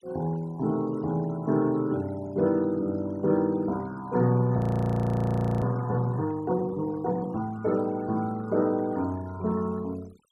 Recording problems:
denoising artefacts; signal-to-artefact ratio 24 dB
frozen audio; at 4.5 s for 1 s

